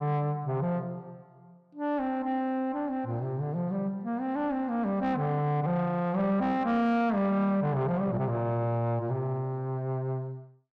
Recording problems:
distortion; soft clipping, signal-to-distortion ratio 11 dB

